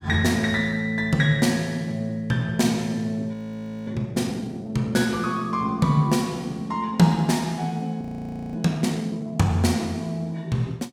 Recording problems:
audio freezing; at 3.5 s for 0.5 s and at 8 s for 0.5 s

